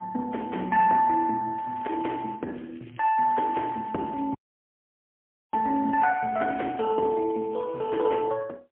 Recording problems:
telephone audio; 260 Hz to 3.3 kHz, AMR-NB, then MP3
crackle; at 1.5 s, from 2.5 to 4.5 s and from 5.5 to 8 s; loose cable, SNR 28 dB
dropout; at 4.5 s for 1 s

